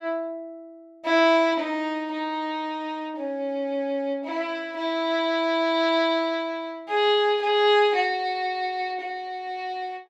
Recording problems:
none

